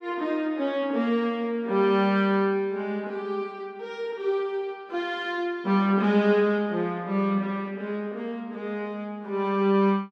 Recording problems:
none

